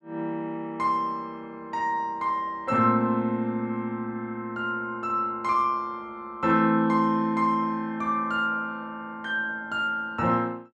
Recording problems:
none

